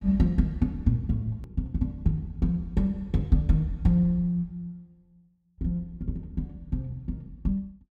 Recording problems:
edit click; at 1.5 s

